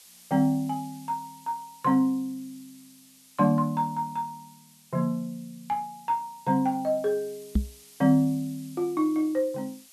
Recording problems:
background hiss; SNR 24 dB
microphone bump; at 7.5 s; peak +6 dB vs average level

